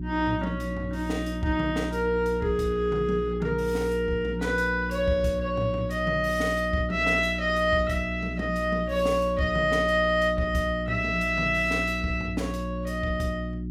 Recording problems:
hum; 60 Hz, harmonics up to 360 Hz, SNR 7 dB

